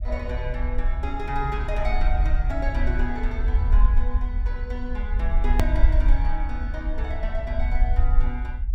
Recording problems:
low-frequency rumble; below 54 Hz, SNR -7 dB
click at an edit; at 5.5 s

